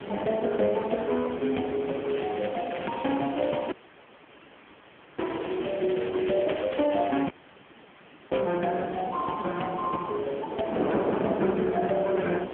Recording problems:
telephone audio; 150 Hz to 3.3 kHz, AMR-NB
hiss; SNR 20 dB
wind on the microphone; below 680 Hz, SNR 7 dB
crackling; from 2 to 8.5 s; loose cable, SNR 15 dB
dropout; at 3.5 s for 1.5 s and at 7.5 s for 1 s

